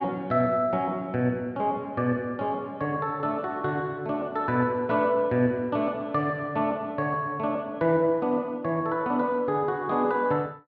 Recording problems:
none

